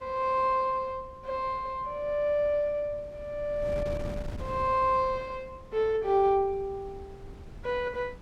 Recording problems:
wind on the microphone; below 230 Hz, SNR 16 dB

